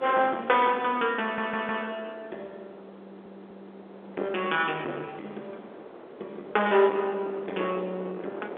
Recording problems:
telephone audio; 280 Hz to 3.7 kHz, G.711
distortion; soft clipping, signal-to-distortion ratio 10 dB
wind on the microphone; below 800 Hz, SNR 17 dB
stutter; at 1 s and at 3 s

